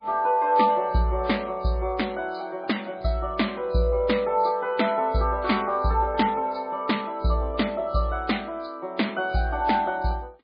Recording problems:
lossy codec; MP3, log-spectral distance 3 dB, nothing above 4.4 kHz

